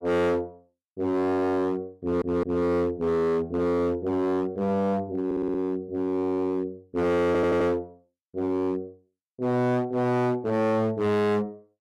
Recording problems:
distorted audio; hard clipping, signal-to-distortion ratio 7 dB
stutter; at 2 s, at 5.5 s and at 7.5 s

